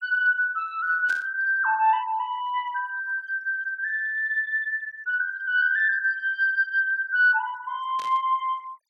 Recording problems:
noise reduction artefacts; signal-to-artefact ratio 28 dB
burst of static; at 1 s and at 8 s; peak -14 dB vs average level

